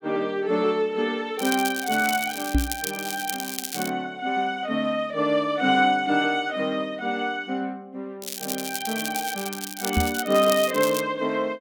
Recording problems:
crackle; from 1.5 to 4 s and from 8 to 11 s; loose cable, SNR 7 dB
knock on the microphone; at 2.5 s and at 10 s; peak +6 dB vs average level

